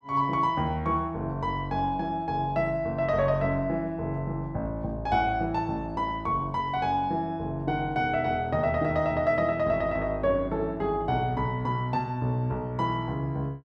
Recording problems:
none

